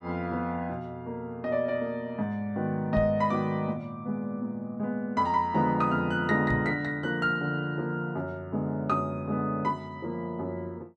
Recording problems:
knock on the microphone; at 3 s and at 6.5 s; peak +1 dB vs average level

